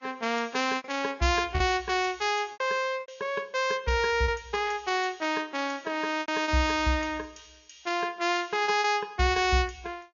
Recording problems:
low-pass filter; nothing above 6.9 kHz
lossy codec; Vorbis, log-spectral distance 3 dB
packet loss; 6% of the sound replaced, filled with repeated pitch periods

